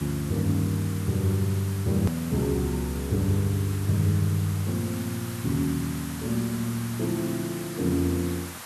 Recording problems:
background hiss; SNR 12 dB
click at an edit; at 2 s

